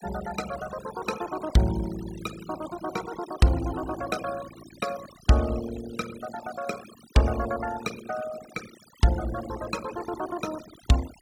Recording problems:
noise reduction artefacts; signal-to-artefact ratio 14 dB

